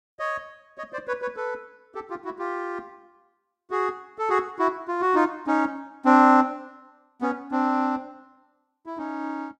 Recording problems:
none

